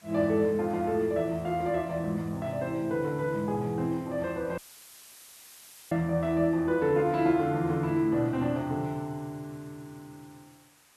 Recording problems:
background hiss; slope -1 dB per octave, SNR 28 dB
audio cutting out; at 4.5 s for 1.5 s; filled with static

